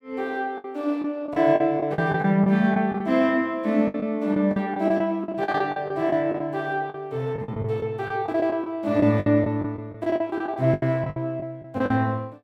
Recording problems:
lost packets; 13% of the sound replaced, filled with the last packet

